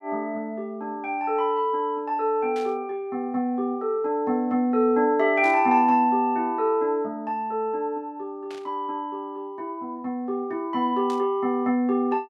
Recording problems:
static burst; 4 times, first at 2.5 s; peak -13 dB vs average level

